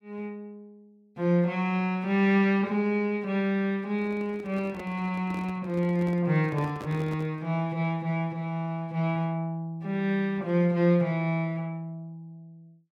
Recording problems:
handling noise; from 4 to 7.5 s; peak -9 dB vs average level

